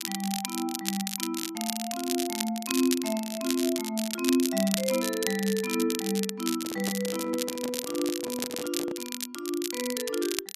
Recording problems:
crackle; vinyl, SNR 3 dB
microphone handling noise; from 6.5 to 9 s; peak -3 dB vs average level

